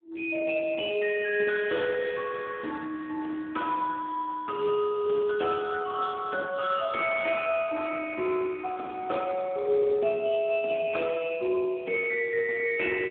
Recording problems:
phone line; 240 Hz to 3.3 kHz, Speex

